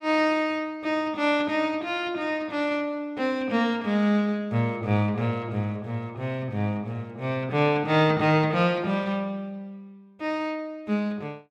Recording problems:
none

